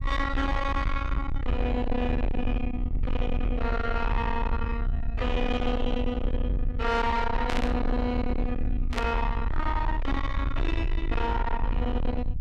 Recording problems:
distortion; soft clipping, signal-to-distortion ratio 8 dB
rumble; below 78 Hz, SNR 1 dB
burst of static; at 7.5 s and at 9 s; peak 0 dB vs average level

